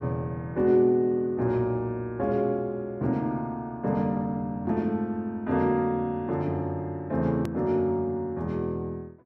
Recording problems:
edit click; at 7.5 s

